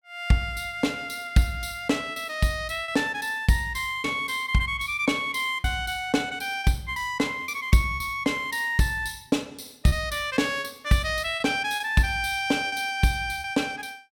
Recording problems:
lost packets; 5% of the sound replaced, filled with repeated pitch periods

